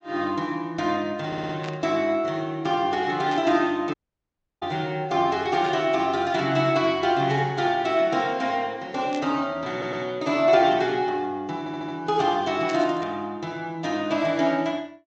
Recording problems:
low-pass filter; nothing above 8 kHz
lossy codec; MP3, log-spectral distance 2 dB
audio stuttering; at 1.5 s, at 9.5 s and at 12 s
static burst; 5 times, first at 1.5 s; peak -9 dB vs average level
dropout; at 4 s for 0.5 s

